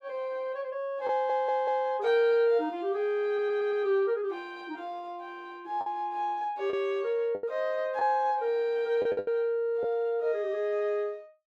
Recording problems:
lost packets; 4% of the sound replaced, filled with the last packet
stutter; at 1 s and at 3.5 s

